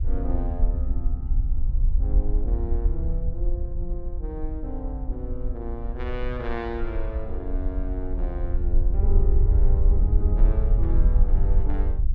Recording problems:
rumble; below 56 Hz, SNR -9 dB

